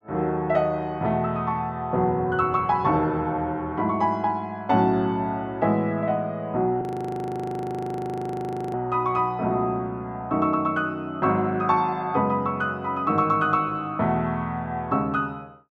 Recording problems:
frozen audio; at 7 s for 2 s

